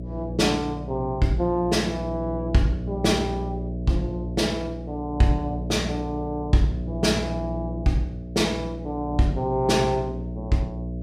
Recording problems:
electrical hum; 60 Hz, harmonics up to 660 Hz, SNR 7 dB

